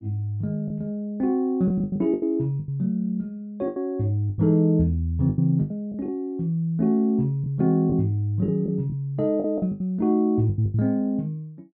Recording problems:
packet loss; 10% of the sound replaced, filled with the last packet

